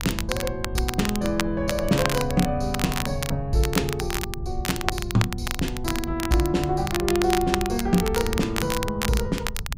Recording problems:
wind on the microphone; below 88 Hz, SNR 9 dB
crackling; vinyl, SNR 5 dB

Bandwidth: 15.5 kHz